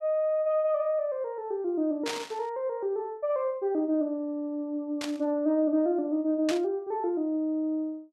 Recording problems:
static burst; at 2 s, at 5 s and at 6.5 s; peak -1 dB vs average level

